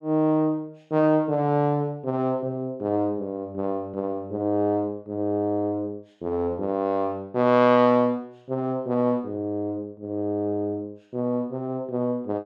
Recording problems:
none

